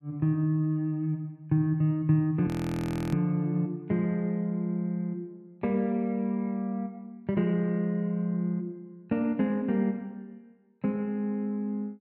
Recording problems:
frozen audio; at 2.5 s for 0.5 s

